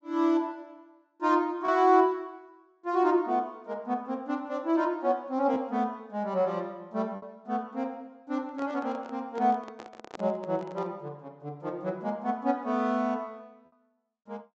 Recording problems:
low-pass filter; nothing above 8 kHz
packet loss; 0.8% of the sound replaced, filled with repeated pitch periods
microphone handling noise; from 8.5 to 11 s; peak -7 dB vs average level

